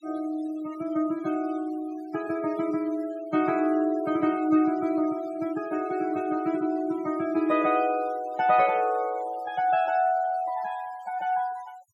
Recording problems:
noise reduction artefacts; signal-to-artefact ratio 20 dB

